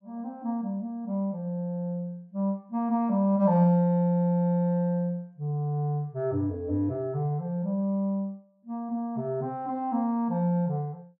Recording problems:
none

